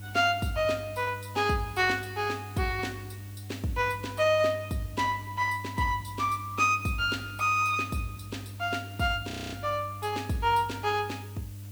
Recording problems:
hum; 50 Hz, harmonics up to 300 Hz, SNR 14 dB
background hiss; slope +1 dB per octave, SNR 23 dB
audio freezing; at 9.5 s

